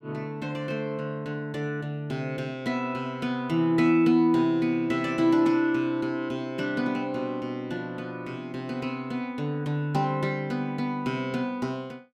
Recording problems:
none

